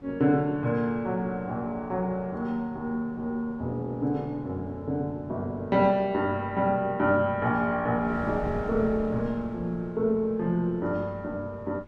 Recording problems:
wind on the microphone; below 250 Hz, SNR 18 dB

